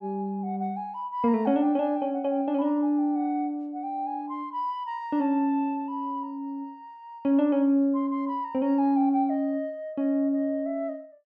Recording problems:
none

